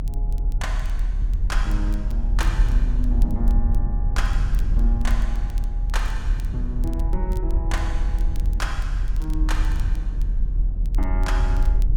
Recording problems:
low-frequency rumble; below 46 Hz, strongest tone 38 Hz, SNR -8 dB
crackling; vinyl, SNR 20 dB

